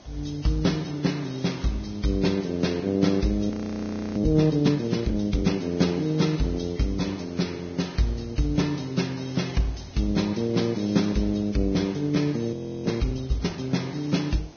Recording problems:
lossy compression; Vorbis, log-spectral distance 5 dB, nothing above 6.3 kHz
hiss; SNR 24 dB
frozen audio; at 3.5 s for 0.5 s and at 13 s

